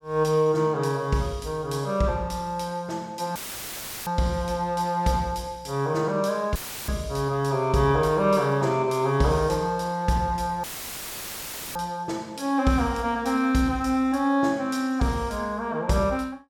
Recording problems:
audio cutting out; at 3.5 s for 0.5 s, at 6.5 s and at 11 s for 1 s; filled with static

